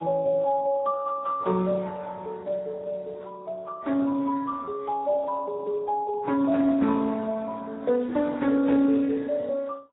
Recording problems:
codec artefacts; Speex, then AAC, log-spectral distance 3 dB, nothing above 3.8 kHz

